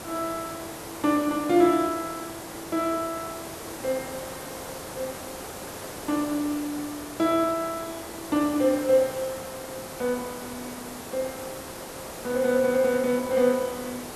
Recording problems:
hiss; slope -5 dB per octave, SNR 11 dB

